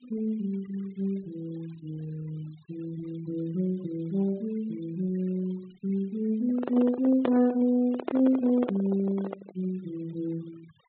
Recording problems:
low-pass filter; nothing above 4 kHz
noise reduction artefacts; signal-to-artefact ratio 23 dB
handling noise; from 6.5 to 9.5 s; peak +3 dB vs average level

